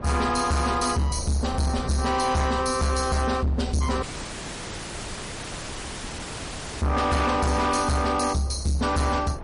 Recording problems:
lossy codec; MP3, log-spectral distance 8 dB, nothing above 10.4 kHz
distortion; soft clipping, signal-to-distortion ratio 8 dB
wind noise; below 570 Hz, SNR 15 dB
dropout; at 4 s for 3 s

